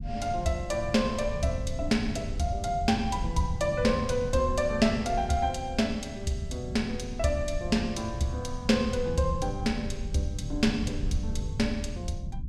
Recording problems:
rumble; below 110 Hz, SNR 8 dB

